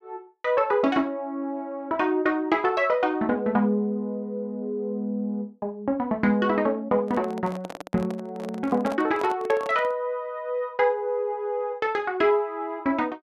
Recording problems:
handling noise; from 7 to 10 s; peak -5 dB vs average level

